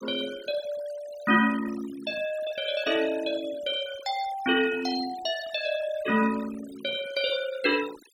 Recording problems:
denoising artefacts; signal-to-artefact ratio 15 dB

